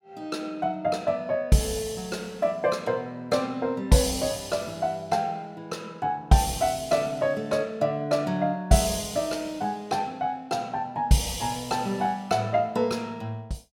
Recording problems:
none

